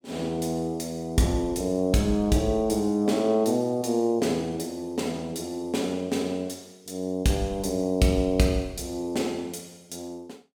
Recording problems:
none

